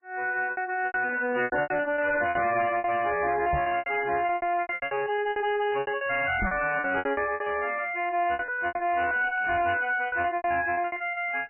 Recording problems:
lossy compression; MP3, log-spectral distance 4 dB, nothing above 2.9 kHz
distortion; soft clipping, signal-to-distortion ratio 10 dB
lost packets; 18% of the sound replaced, filled with repeated pitch periods
crackling; from 1 to 2.5 s and from 9 to 10 s; loose cable, SNR 19 dB
knock on the microphone; at 3.5 s and at 6.5 s; peak +1 dB vs average level

